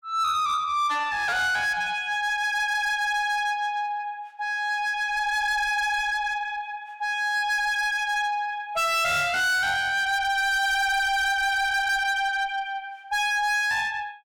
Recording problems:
distorted audio; soft clipping, signal-to-distortion ratio 7 dB

